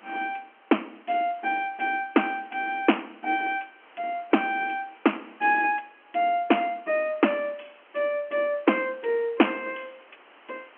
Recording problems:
phone line; 240 Hz to 3.2 kHz, G.711
hiss; SNR 27 dB

